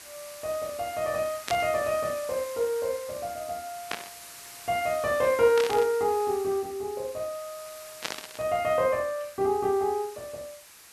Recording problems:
background hiss; slope +1 dB per octave, SNR 16 dB
burst of static; 4 times, first at 1.5 s; peak +1 dB vs average level

